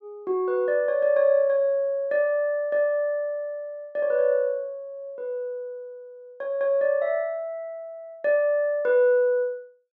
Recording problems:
none

